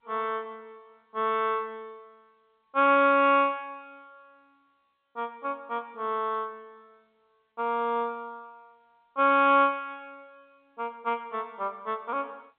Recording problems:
telephone audio; 240 Hz to 3.7 kHz, G.711

